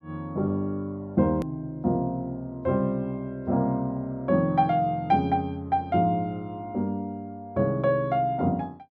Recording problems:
edit click; at 1.5 s

